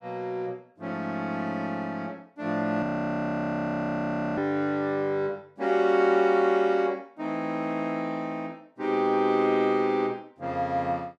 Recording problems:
audio freezing; at 3 s for 1.5 s

